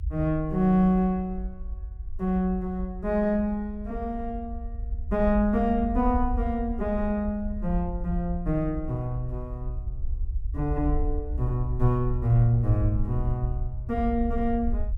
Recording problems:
rumble; below 64 Hz, SNR 7 dB

